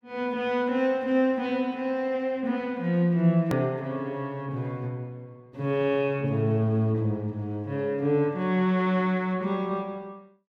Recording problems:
edit click; at 3.5 s

